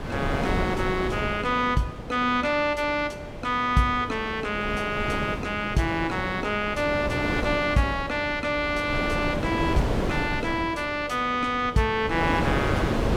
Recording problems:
wind on the microphone; below 650 Hz, SNR 5 dB

